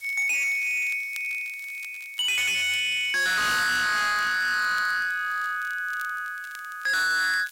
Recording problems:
distortion; hard clipping, signal-to-distortion ratio 6 dB
hiss; slope +4 dB per octave, SNR 27 dB
crackling; vinyl, SNR 25 dB

